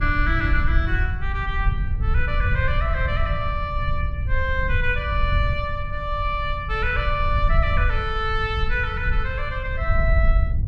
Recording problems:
low-frequency rumble; below 78 Hz, SNR 0 dB

